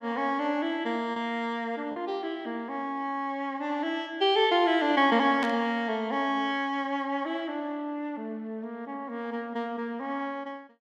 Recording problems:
packet loss; 0.8% of the sound replaced, filled with repeated pitch periods
static burst; at 5.5 s; peak -5 dB vs average level

